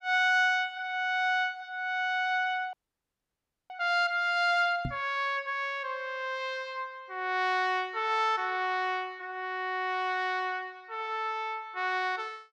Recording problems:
frozen audio; at 2.5 s for 1 s
microphone thump; at 5 s; peak -1 dB vs average level

